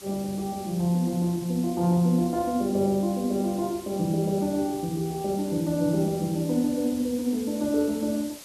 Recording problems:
background hiss; SNR 17 dB

